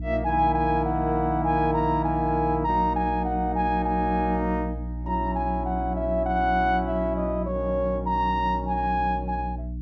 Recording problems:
hum; 60 Hz, harmonics up to 300 Hz, SNR 9 dB

